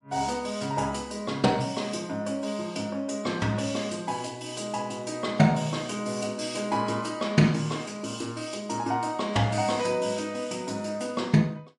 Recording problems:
lossy compression; MP3, log-spectral distance 3 dB, nothing above 11 kHz

